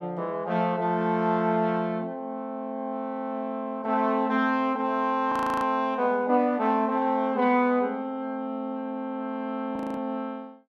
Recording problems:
audio freezing; at 5.5 s and at 10 s

